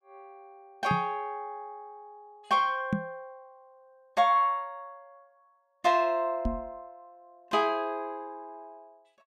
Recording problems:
knock on the microphone; at 1 s, at 3 s and at 6.5 s; peak +4 dB vs average level

